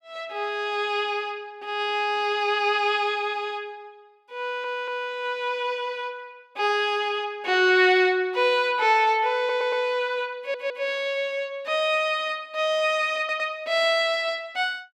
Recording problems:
stutter; 4 times, first at 4.5 s

